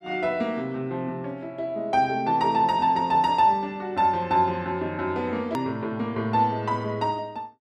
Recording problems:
hard cut with a click; at 5.5 s

